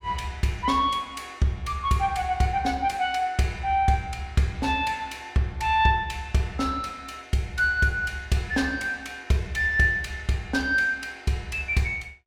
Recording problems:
none

